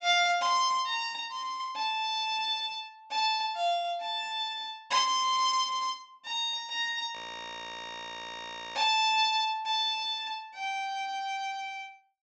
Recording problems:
low-pass filter; nothing above 8 kHz
audio freezing; at 7 s for 1.5 s

